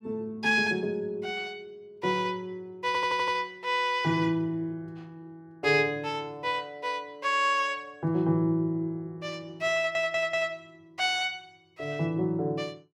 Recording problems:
audio stuttering; at 3 s and at 10 s

